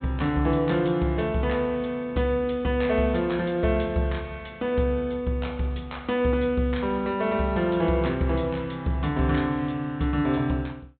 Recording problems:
treble missing; nothing above 4 kHz

